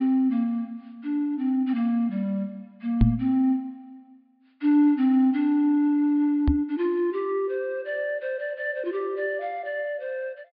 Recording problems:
treble missing; nothing above 5 kHz
microphone bump; at 3 s and at 6.5 s; peak +9 dB vs average level

